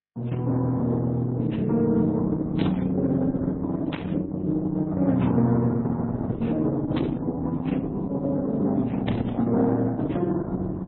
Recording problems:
lossy compression; Opus, then MP3, log-spectral distance 3 dB, nothing above 3.9 kHz
static burst; 4 times, first at 2.5 s; peak -4 dB vs average level

